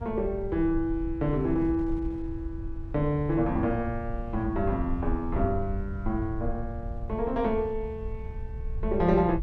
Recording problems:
low-frequency rumble; below 78 Hz, SNR 8 dB
wind noise; below 120 Hz, SNR 17 dB

